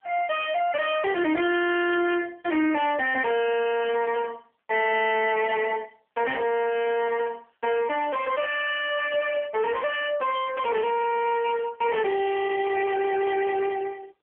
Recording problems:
phone line; 240 Hz to 3.1 kHz, AMR-NB
distortion; soft clipping, signal-to-distortion ratio 7 dB

